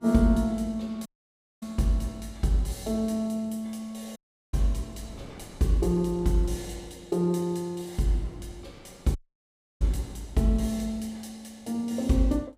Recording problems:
wind noise; below 420 Hz, SNR 22 dB
dropout; at 1 s for 0.5 s, at 4 s and at 9 s for 0.5 s

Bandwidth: 15.5 kHz